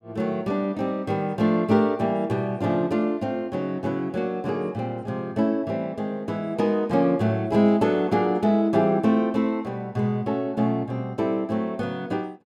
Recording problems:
none

